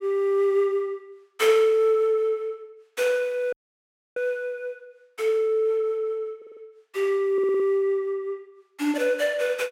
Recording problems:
audio cutting out; at 3.5 s for 0.5 s
stutter; at 6.5 s and at 7.5 s

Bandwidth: 16 kHz